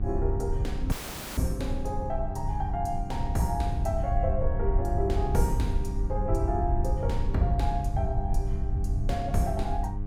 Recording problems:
electrical hum; 50 Hz, harmonics up to 1.2 kHz, SNR 8 dB
low-frequency rumble; below 82 Hz, SNR -1 dB
audio cutting out; at 1 s

